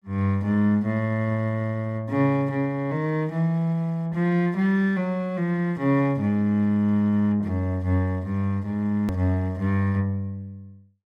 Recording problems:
edit click; at 9 s

